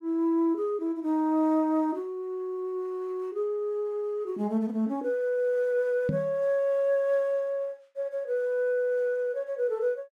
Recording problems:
microphone thump; at 6 s; peak +2 dB vs average level

